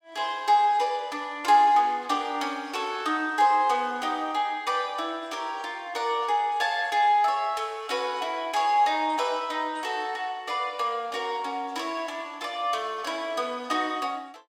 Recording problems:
none

